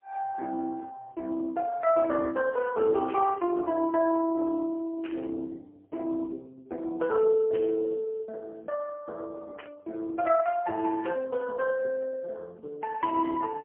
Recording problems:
telephone audio; 280 Hz to 2.6 kHz, AMR-NB, then MP3
burst of static; 5 times, first at 3 s; peak -10 dB vs average level

